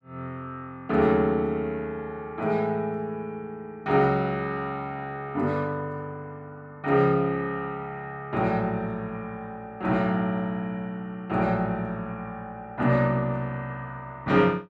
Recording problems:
none

